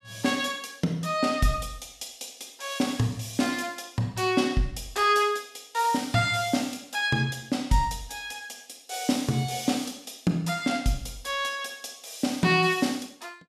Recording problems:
none

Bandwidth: 15 kHz